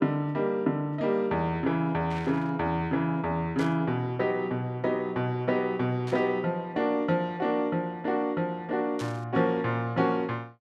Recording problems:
static burst; 4 times, first at 2 s; peak -9 dB vs average level

